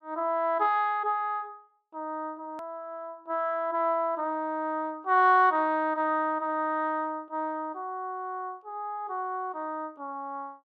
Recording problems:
edit click; at 2.5 s

